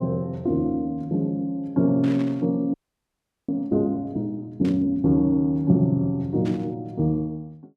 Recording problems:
burst of static; at 2 s, at 4.5 s and at 6.5 s; peak -13 dB vs average level
frozen audio; at 2.5 s for 0.5 s

